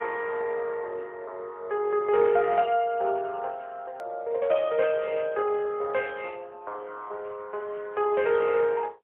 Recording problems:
telephone audio; 340 Hz to 3.5 kHz, AMR-NB, then MP3
edit click; at 4 s

